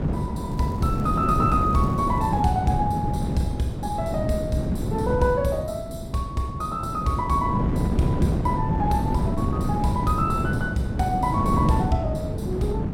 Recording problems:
wind noise; below 270 Hz, SNR 0 dB
crackle; from 0.5 to 2.5 s; loose cable, SNR 28 dB

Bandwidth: 16.5 kHz